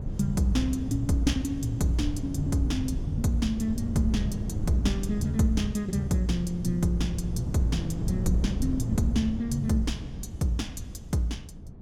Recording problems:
wind noise; below 160 Hz, SNR 6 dB

